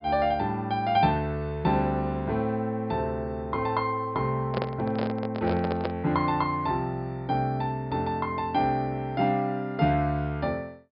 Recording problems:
treble missing; nothing above 5.5 kHz
microphone handling noise; from 4.5 to 6 s; peak +1 dB vs average level

